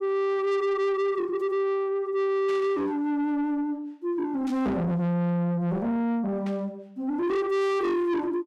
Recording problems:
distorted audio; soft clipping, signal-to-distortion ratio 8 dB
static burst; at 2.5 s, at 4.5 s and at 6.5 s; peak -13 dB vs average level

